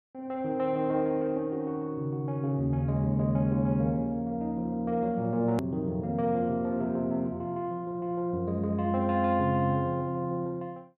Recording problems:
edit click; at 5.5 s

